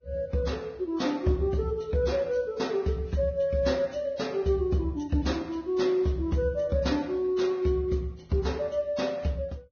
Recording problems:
lossy codec; Vorbis, log-spectral distance 2 dB, nothing above 6.5 kHz

